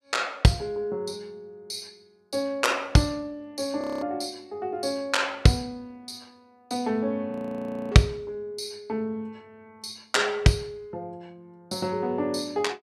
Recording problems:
audio freezing; at 4 s and at 7.5 s for 0.5 s

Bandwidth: 14.5 kHz